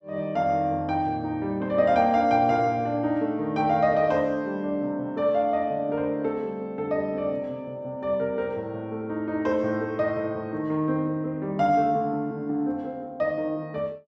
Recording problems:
none

